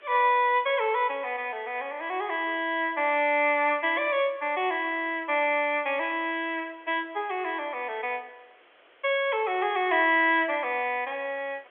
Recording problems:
phone line; 300 Hz to 3.4 kHz, G.711
background hiss; SNR 30 dB

